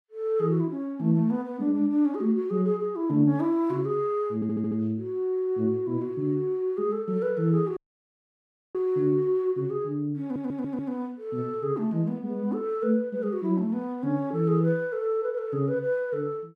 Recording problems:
stutter; at 4.5 s and at 10 s
dropout; at 8 s for 1 s

